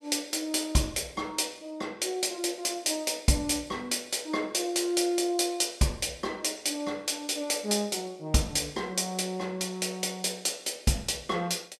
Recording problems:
none

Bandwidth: 14.5 kHz